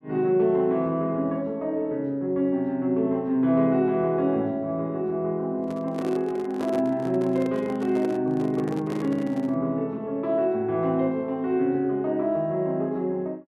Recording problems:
handling noise; from 5.5 to 9.5 s; peak -5 dB vs average level

